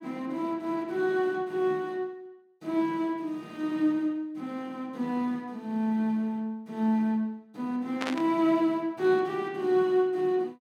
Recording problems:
static burst; at 8 s; peak 0 dB vs average level

